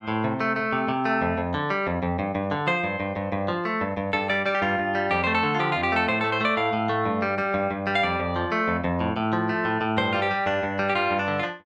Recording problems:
none

